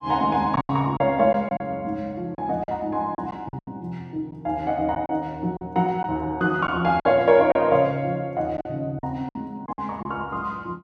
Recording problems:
lost packets; 8% of the sound replaced, filled with silence

